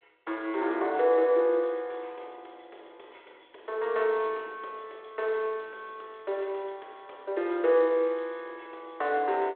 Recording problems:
telephone audio; 280 Hz to 3.6 kHz, G.726

